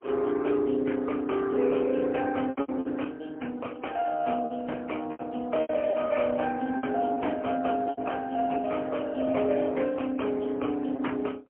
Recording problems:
phone line; 190 Hz to 3.1 kHz, AMR-NB, then MP3
packet loss; 6% of the sound replaced, filled with repeated pitch periods

